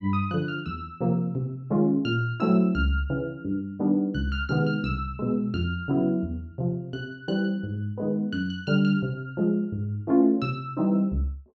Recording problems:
none

